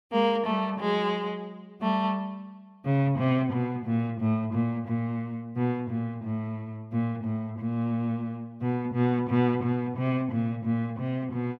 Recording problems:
none

